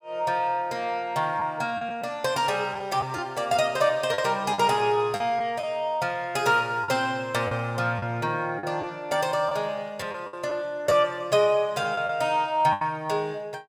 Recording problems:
packet loss; 5% of the sound replaced, filled with the last packet

